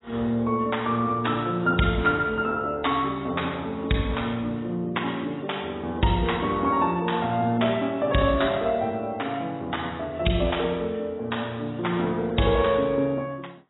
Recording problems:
lossy compression; AAC, log-spectral distance 5 dB, nothing above 3.8 kHz

